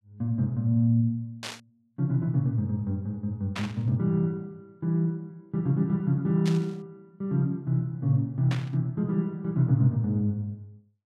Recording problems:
static burst; 4 times, first at 1.5 s; peak -4 dB vs average level

